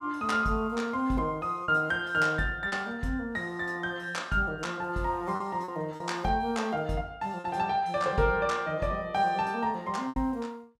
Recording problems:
packet loss; 3% of the sound replaced, filled with repeated pitch periods

